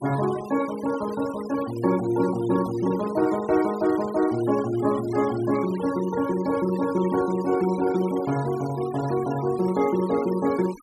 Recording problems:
noise reduction artefacts; signal-to-artefact ratio 17 dB

